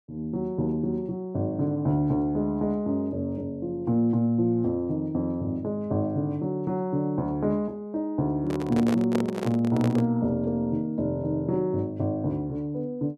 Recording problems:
microphone handling noise; from 8.5 to 10 s; peak +1 dB vs average level

